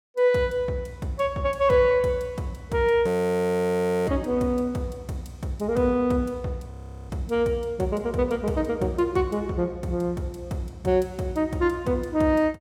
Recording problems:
audio freezing; at 3 s for 1 s and at 6.5 s

